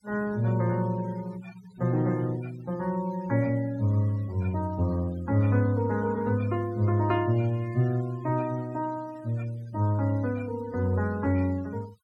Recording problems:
noise reduction artefacts; signal-to-artefact ratio 22 dB

